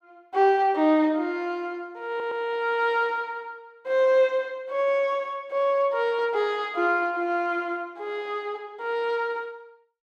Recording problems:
stutter; at 2 s

